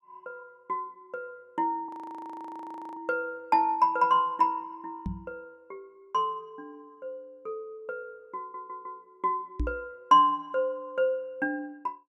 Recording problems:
audio freezing; at 2 s for 1 s
microphone bump; at 5 s and at 9.5 s; peak +1 dB vs average level
stutter; at 8.5 s

